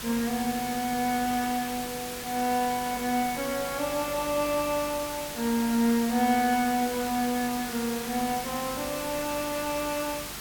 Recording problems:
electrical hum; 50 Hz, harmonics up to 450 Hz, SNR 21 dB
background hiss; slope -1 dB per octave, SNR 7 dB

